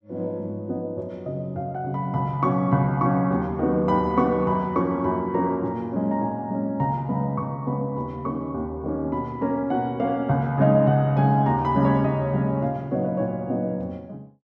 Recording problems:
none

